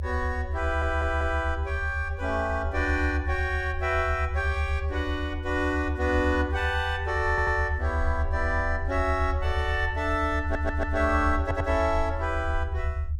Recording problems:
low-frequency rumble; below 80 Hz, SNR 3 dB
stutter; 4 times, first at 0.5 s

